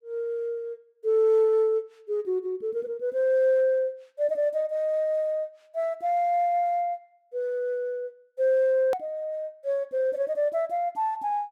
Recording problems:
hard cut with a click; at 9 s

